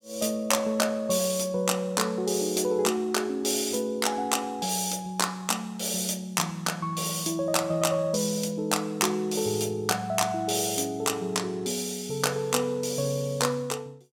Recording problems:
none

